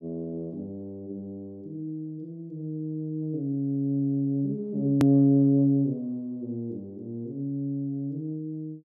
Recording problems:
click at an edit; at 5 s

